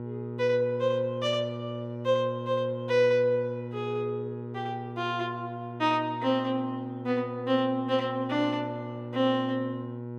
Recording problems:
hum; 60 Hz, harmonics up to 1.1 kHz, SNR 9 dB

